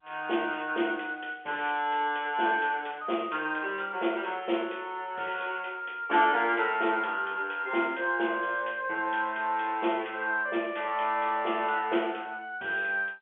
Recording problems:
telephone audio; 260 Hz to 3.4 kHz, G.711

